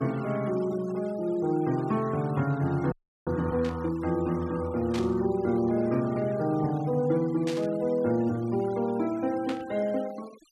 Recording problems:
denoising artefacts; signal-to-artefact ratio 21 dB
audio freezing; at 3 s
burst of static; 4 times, first at 3.5 s; peak -6 dB vs average level

